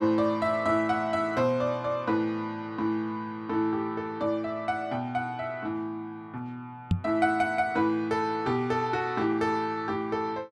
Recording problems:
microphone thump; at 7 s; peak +6 dB vs average level

